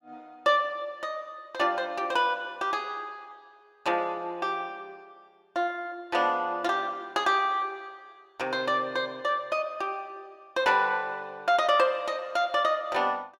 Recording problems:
none

